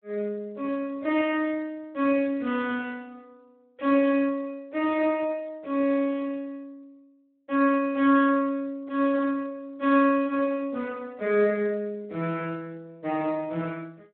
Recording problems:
telephone audio; 170 Hz to 3.4 kHz, Speex

